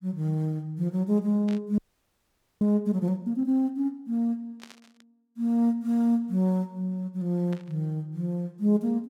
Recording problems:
burst of static; at 1.5 s, at 4.5 s and at 7.5 s; peak -14 dB vs average level
frozen audio; at 2 s for 1 s

